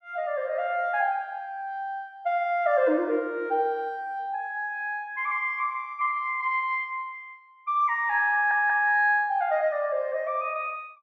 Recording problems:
stutter; at 8.5 s

